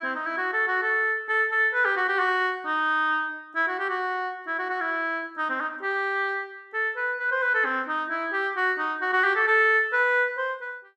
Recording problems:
none

